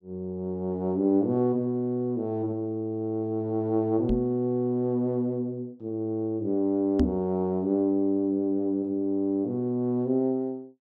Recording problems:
knock on the microphone; at 4 s and at 7 s; peak +6 dB vs average level

